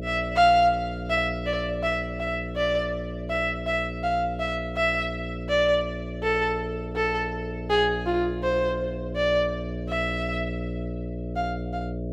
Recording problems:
hum; 60 Hz, harmonics up to 660 Hz, SNR 8 dB

